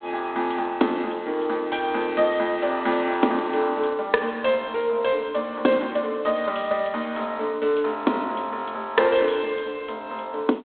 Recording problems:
phone line; 220 Hz to 3.7 kHz, G.726

